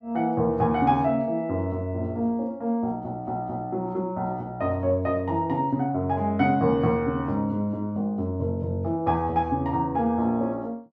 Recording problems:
none

